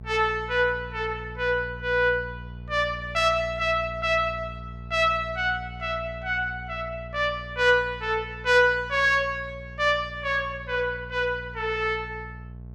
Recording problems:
hum; 60 Hz, harmonics up to 660 Hz, SNR 15 dB

